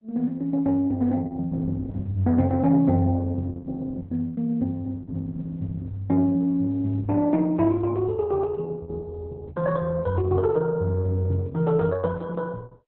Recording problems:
codec artefacts; Opus, log-spectral distance 3 dB, nothing above 3.9 kHz

